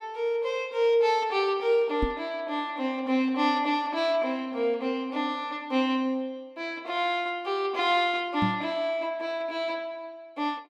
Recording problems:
microphone thump; at 2 s and at 8.5 s; peak +3 dB vs average level

